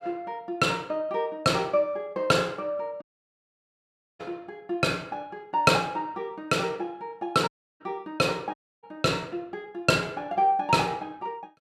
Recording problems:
audio cutting out; at 3 s for 1 s, at 7.5 s and at 8.5 s

